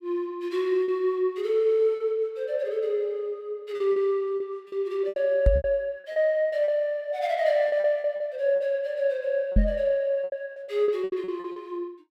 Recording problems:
lost packets; 10% of the sound replaced, filled with repeated pitch periods
microphone bump; at 5.5 s and at 9.5 s; peak +8 dB vs average level

